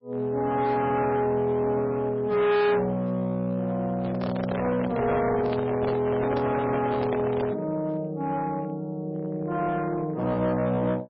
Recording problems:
lossy compression; MP3, log-spectral distance 2 dB, nothing above 4.5 kHz
distorted audio; hard clipping, uneven, signal-to-distortion ratio 6 dB
handling noise; from 4 to 7.5 s; peak -1 dB vs average level

